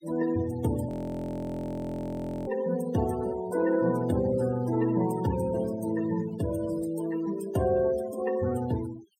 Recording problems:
denoising artefacts; signal-to-artefact ratio 14 dB
audio freezing; at 1 s for 1.5 s

